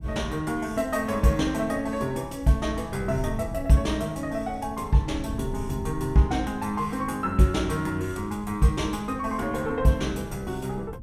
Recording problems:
wind noise; below 140 Hz, SNR 14 dB

